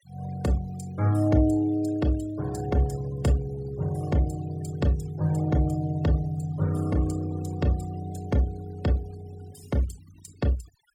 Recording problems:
noise reduction artefacts; signal-to-artefact ratio 21 dB

